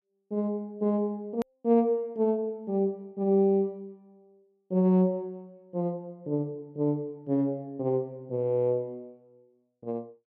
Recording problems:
click at an edit; at 1.5 s

